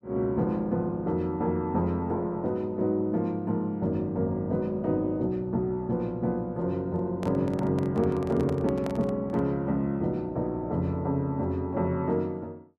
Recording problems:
handling noise; from 7 to 9.5 s; peak -5 dB vs average level

